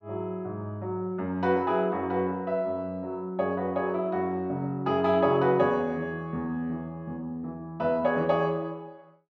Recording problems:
none

